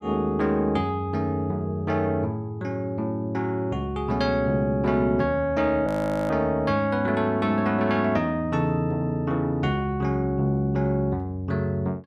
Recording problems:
frozen audio; at 6 s

